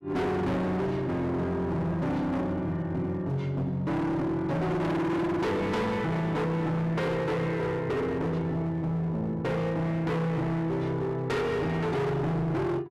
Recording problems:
distorted audio; hard clipping, signal-to-distortion ratio 6 dB

